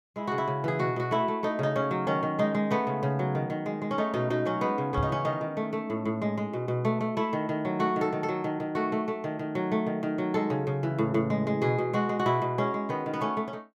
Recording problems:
microphone thump; at 5 s; peak +1 dB vs average level

